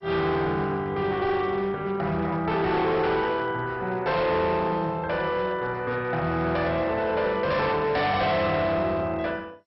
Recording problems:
lossy codec; MP2, log-spectral distance 2 dB, nothing above 5.5 kHz
distorted audio; hard clipping, signal-to-distortion ratio 10 dB

